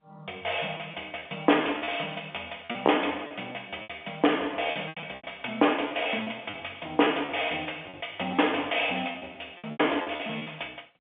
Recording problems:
telephone audio; 300 Hz to 3.4 kHz, G.711
packet loss; 11% of the sound replaced, filled with repeated pitch periods

